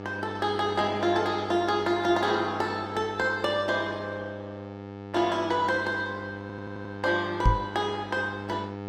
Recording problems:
lossy codec; Opus, log-spectral distance 2 dB, nothing above 18.5 kHz
electrical hum; 50 Hz, harmonics up to 2.2 kHz, SNR 11 dB
audio stuttering; at 6.5 s
microphone bump; at 7.5 s; peak +8 dB vs average level

